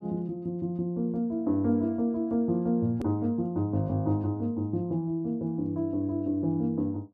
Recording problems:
click at an edit; at 3 s

